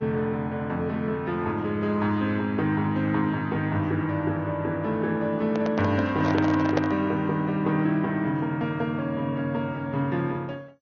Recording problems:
codec artefacts; MP2, then Vorbis, log-spectral distance 2 dB, nothing above 6.5 kHz
microphone handling noise; from 5.5 to 7 s; peak +3 dB vs average level

